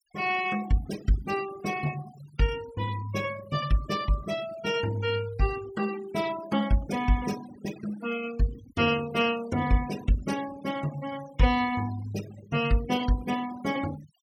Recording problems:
denoising artefacts; signal-to-artefact ratio 15 dB

